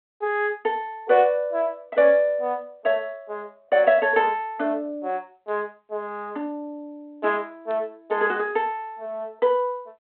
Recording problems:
telephone audio; 240 Hz to 3.5 kHz, G.726

